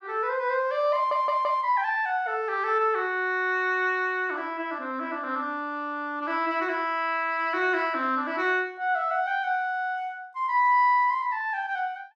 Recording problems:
audio stuttering; at 1 s

